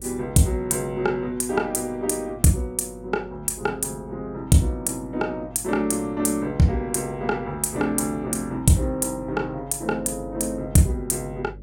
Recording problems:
electrical hum; 50 Hz, harmonics up to 550 Hz, SNR 21 dB

